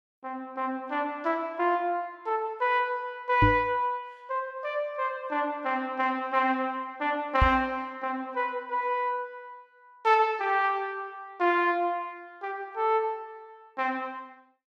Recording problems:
knock on the microphone; at 3.5 s and at 7.5 s; peak +7 dB vs average level

